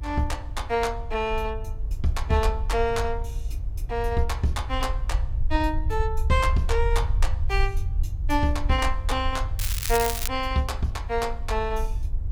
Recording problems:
hiss; slope -10 dB per octave, SNR 28 dB
low-frequency rumble; below 64 Hz, SNR 3 dB
crackle; at 9.5 s; loose cable, SNR 3 dB

